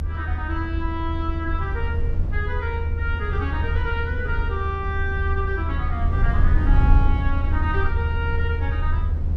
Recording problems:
mains hum; 50 Hz, harmonics up to 550 Hz, SNR 16 dB
rumble; below 80 Hz, SNR -5 dB

